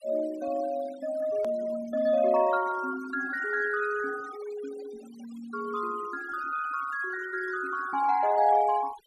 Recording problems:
noise reduction artefacts; signal-to-artefact ratio 17 dB
hard cut with a click; at 1.5 s

